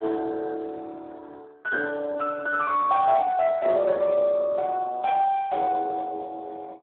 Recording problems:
phone line; 300 Hz to 3.8 kHz, Speex

